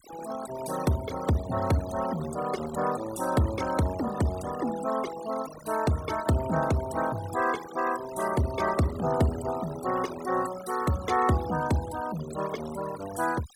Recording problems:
denoising artefacts; signal-to-artefact ratio 13 dB

